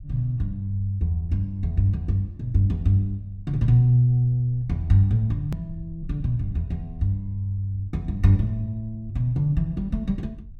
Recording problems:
low-frequency rumble; below 80 Hz, SNR 19 dB
click at an edit; at 5.5 s

